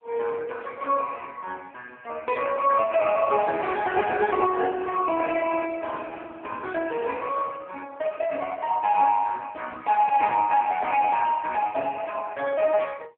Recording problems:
phone line; 300 Hz to 3.3 kHz, AMR-NB

